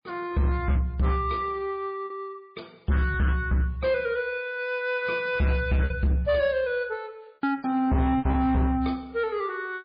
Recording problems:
lossy codec; MP3, log-spectral distance 2 dB
distortion; hard clipping, signal-to-distortion ratio 10 dB
lost packets; 4% of the sound replaced, filled with repeated pitch periods

